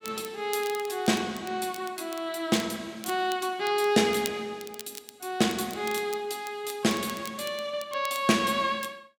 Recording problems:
crackle; vinyl, SNR 16 dB

